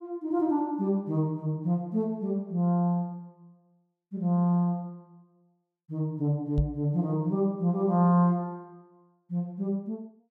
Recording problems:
knock on the microphone; at 6.5 s; peak +2 dB vs average level

